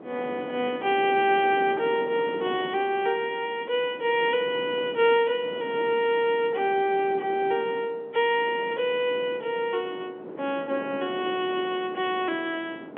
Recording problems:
telephone audio; 260 Hz to 3.6 kHz, G.711
wind noise; below 580 Hz, SNR 14 dB

